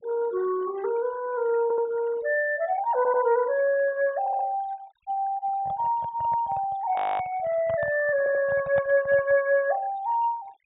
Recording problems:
treble cut off; nothing above 4 kHz
denoising artefacts; signal-to-artefact ratio 22 dB
audio stuttering; 4 times, first at 1.5 s
microphone handling noise; from 5.5 to 9.5 s; peak -7 dB vs average level
audio freezing; at 7 s

